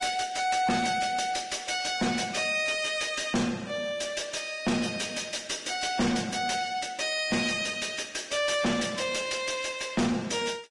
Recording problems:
codec artefacts; Vorbis, log-spectral distance 5 dB, nothing above 10.4 kHz
distorted audio; soft clipping, signal-to-distortion ratio 7 dB

